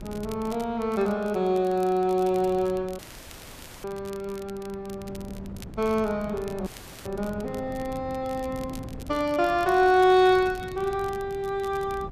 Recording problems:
wind noise; below 260 Hz, SNR 18 dB
crackle; vinyl, SNR 24 dB
audio cutting out; at 3 s for 1 s and at 6.5 s

